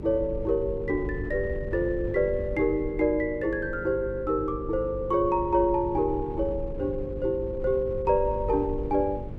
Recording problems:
hum; 50 Hz, harmonics up to 550 Hz, SNR 13 dB
wind noise; below 98 Hz, SNR 12 dB

